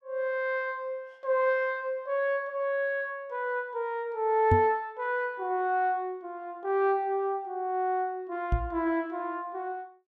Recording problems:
microphone bump; at 4.5 s and at 8.5 s; peak +7 dB vs average level

